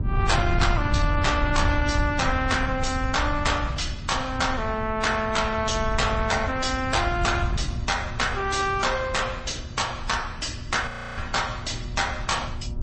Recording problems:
lossy codec; MP3, then MP3, log-spectral distance 4 dB, nothing above 8.2 kHz
distortion; soft clipping, signal-to-distortion ratio 10 dB
electrical hum; 60 Hz, harmonics up to 1.3 kHz, SNR 19 dB
wind noise; below 110 Hz, SNR 6 dB
audio freezing; at 11 s

